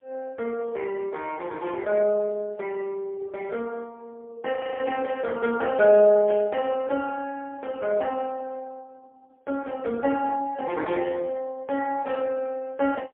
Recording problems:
phone line; 320 Hz to 3.3 kHz, AMR-NB, then MP3
audio freezing; at 4.5 s
burst of static; at 6.5 s; peak -13 dB vs average level

